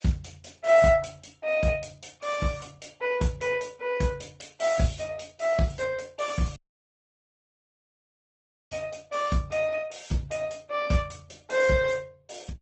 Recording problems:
lossy codec; Speex, then Opus, log-spectral distance 5 dB, nothing above 8 kHz
audio cutting out; at 6.5 s for 2 s

